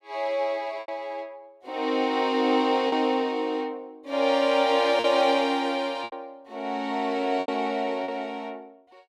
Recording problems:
packet loss; 4% of the sound replaced, filled with repeated pitch periods

